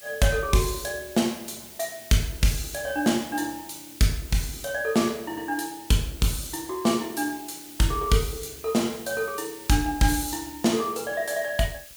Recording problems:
hiss; SNR 16 dB

